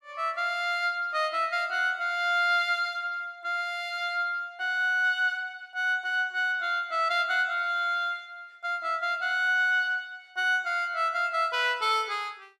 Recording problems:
none

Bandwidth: 14.5 kHz